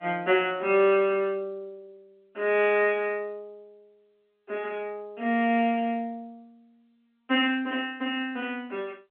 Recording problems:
phone line; 260 Hz to 3.3 kHz, G.711

